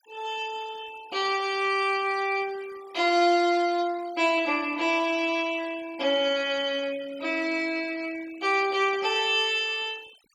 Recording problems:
noise reduction artefacts; signal-to-artefact ratio 22 dB

